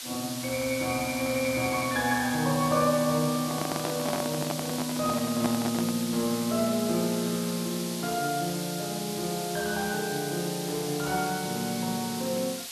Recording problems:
hiss; slope +3 dB per octave, SNR 6 dB
microphone handling noise; from 3.5 to 6 s; peak +2 dB vs average level

